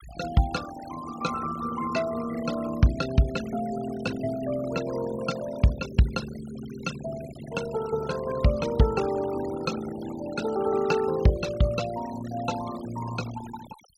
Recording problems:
noise reduction artefacts; signal-to-artefact ratio 14 dB

